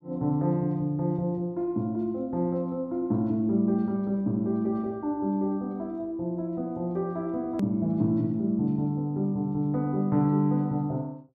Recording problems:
click at an edit; at 7.5 s

